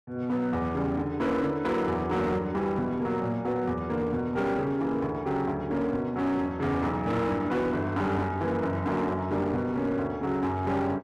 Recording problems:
distortion; hard clipping, uneven, signal-to-distortion ratio 12 dB

